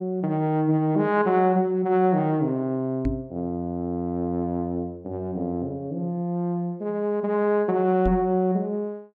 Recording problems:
microphone thump; at 3 s and at 8 s; peak +1 dB vs average level

